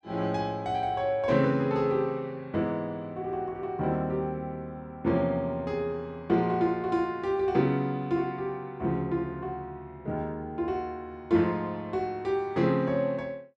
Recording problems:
none

